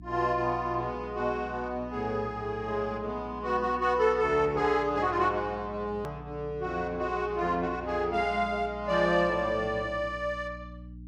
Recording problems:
mains hum; 60 Hz, harmonics up to 300 Hz, SNR 17 dB
edit click; at 6 s

